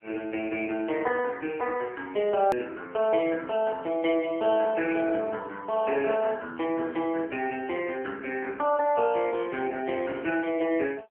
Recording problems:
phone line; 280 Hz to 2.9 kHz, AMR-NB
edit click; at 2.5 s

